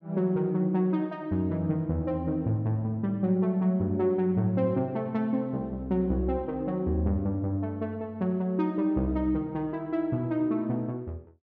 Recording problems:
none

